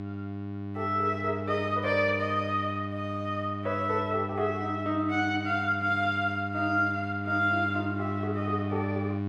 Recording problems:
hum; 50 Hz, harmonics up to 1.1 kHz, SNR 6 dB

